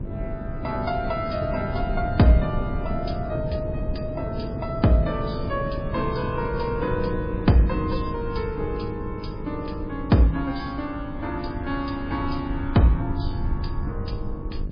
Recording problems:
codec artefacts; MP3, log-spectral distance 3 dB, nothing above 5 kHz
electrical hum; 50 Hz, harmonics up to 700 Hz, SNR 15 dB
rumble; below 98 Hz, SNR 8 dB
wind on the microphone; below 360 Hz, SNR 9 dB

